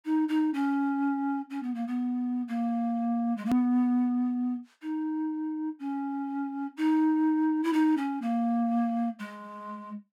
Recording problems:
click at an edit; at 3.5 s

